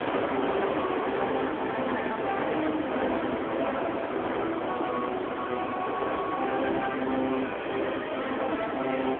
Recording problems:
telephone audio; 240 Hz to 3.5 kHz, AMR-NB
distortion; hard clipping, uneven, signal-to-distortion ratio 10 dB
hiss; SNR 3 dB
wind on the microphone; below 870 Hz, SNR 17 dB

